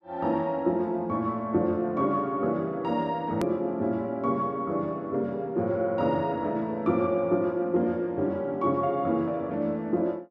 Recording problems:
click at an edit; at 3.5 s

